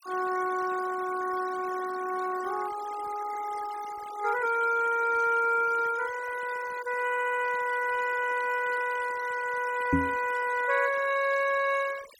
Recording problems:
denoising artefacts; signal-to-artefact ratio 15 dB
audio stuttering; at 7 s
knock on the microphone; at 10 s; peak +6 dB vs average level

